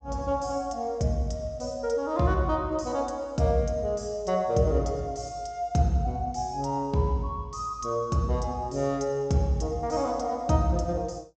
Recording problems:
low-pass filter; nothing above 8 kHz

